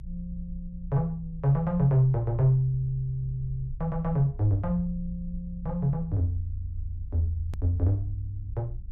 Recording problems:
low-frequency rumble; below 62 Hz, strongest tone 28 Hz, SNR 13 dB
click at an edit; at 7.5 s

